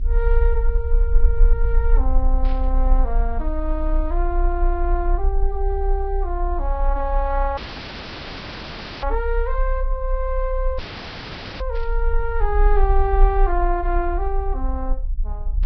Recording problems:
lossy compression; Vorbis, log-spectral distance 3 dB
rumble; below 40 Hz, strongest tone 30 Hz, SNR -3 dB
burst of static; at 2.5 s and at 12 s; peak -13 dB vs average level
audio cutting out; at 7.5 s for 1.5 s and at 11 s for 1 s

